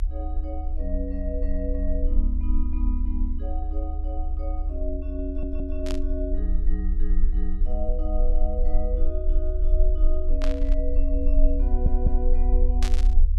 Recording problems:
rumble; below 38 Hz, strongest tone 20 Hz, SNR -8 dB
stutter; at 5.5 s and at 12 s
static burst; at 6 s, at 10 s and at 13 s; peak +4 dB vs average level

